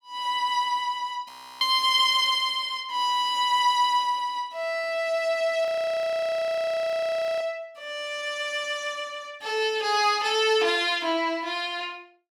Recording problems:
audio freezing; at 1.5 s and at 5.5 s for 2 s

